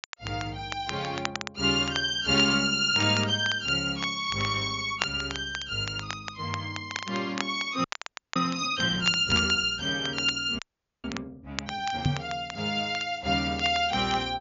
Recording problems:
low-pass filter; nothing above 7.1 kHz
crackle; vinyl, SNR 13 dB
audio freezing; at 8 s for 0.5 s and at 11 s
knock on the microphone; at 12 s; peak +5 dB vs average level

